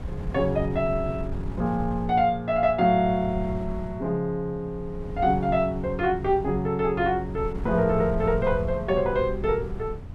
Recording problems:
wind on the microphone; below 130 Hz, SNR 11 dB

